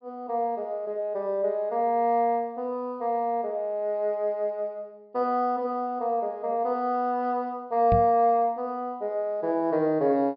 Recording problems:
low-pass filter; nothing above 5.5 kHz
microphone thump; at 8 s; peak +3 dB vs average level

